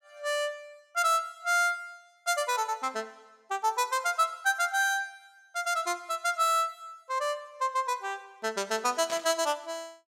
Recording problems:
static burst; at 9 s; peak -5 dB vs average level

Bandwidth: 16.5 kHz